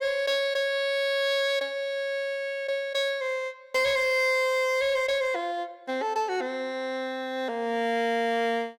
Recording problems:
distorted audio; hard clipping, signal-to-distortion ratio 12 dB

